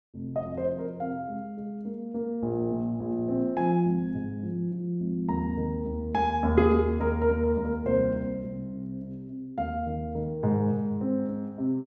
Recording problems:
none

